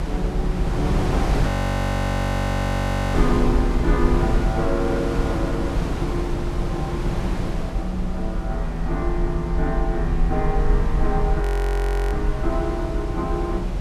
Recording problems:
rumble; below 48 Hz, SNR 1 dB
wind noise; below 660 Hz, SNR 1 dB
audio freezing; at 1.5 s for 1.5 s and at 11 s for 0.5 s

